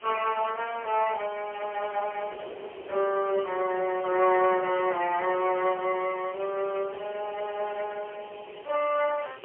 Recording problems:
phone line; 320 Hz to 2.9 kHz, AMR-NB, then MP3
background hiss; SNR 23 dB
wind noise; below 650 Hz, SNR 20 dB

